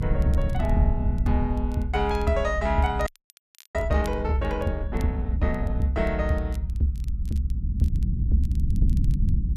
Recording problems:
rumble; below 90 Hz, SNR 0 dB
crackling; vinyl, SNR 26 dB
frozen audio; at 3 s for 0.5 s

